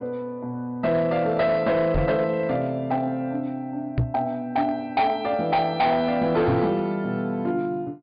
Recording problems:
treble missing; nothing above 5 kHz
distorted audio; hard clipping, signal-to-distortion ratio 11 dB
knock on the microphone; at 2 s, at 4 s and at 6.5 s; peak +4 dB vs average level

